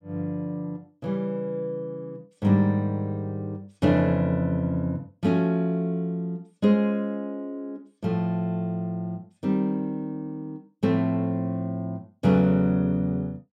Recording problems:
none

